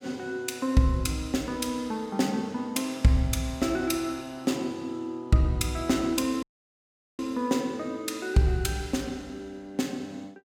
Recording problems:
dropout; at 6.5 s for 1 s

